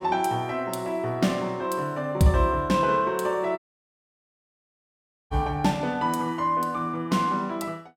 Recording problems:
audio cutting out; at 3.5 s for 1.5 s

